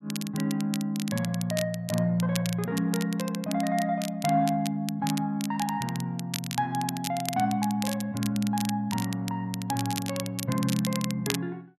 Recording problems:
crackle; vinyl, SNR 9 dB

